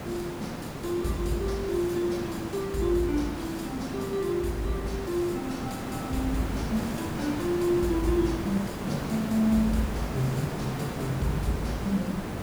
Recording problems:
hiss; slope -7 dB per octave, SNR 5 dB

